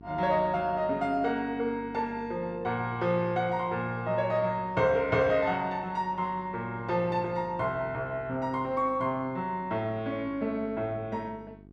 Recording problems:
hum; 50 Hz, harmonics up to 800 Hz, SNR 22 dB

